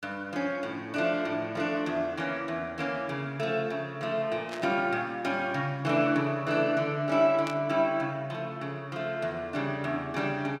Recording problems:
static burst; at 4.5 s and at 7.5 s; peak -6 dB vs average level

